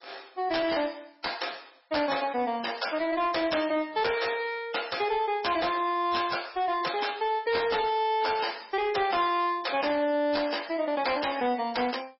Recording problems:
lossy compression; MP3, log-spectral distance 9 dB, nothing above 5.5 kHz
distorted audio; hard clipping, signal-to-distortion ratio 9 dB

